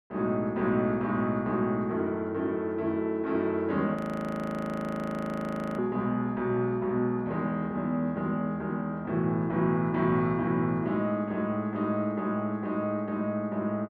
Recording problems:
frozen audio; at 4 s for 2 s

